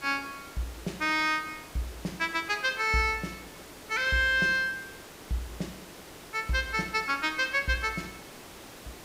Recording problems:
background hiss; slope -4 dB per octave, SNR 17 dB

